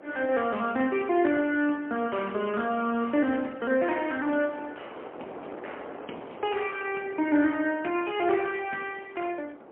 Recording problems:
telephone audio; 240 Hz to 3.1 kHz, AMR-NB, then MP3
wind noise; below 850 Hz, SNR 17 dB

